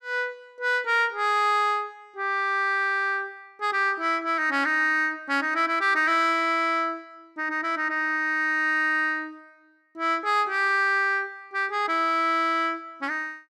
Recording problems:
none

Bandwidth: 14.5 kHz